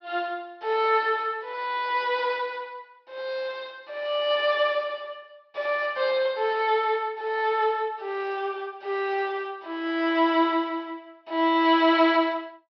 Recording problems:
treble missing; nothing above 5.5 kHz

